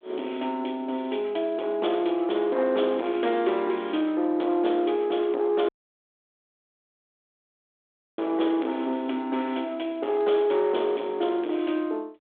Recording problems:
phone line; 240 Hz to 3.5 kHz, G.726
distortion; soft clipping, signal-to-distortion ratio 12 dB
audio cutting out; at 5.5 s for 2.5 s

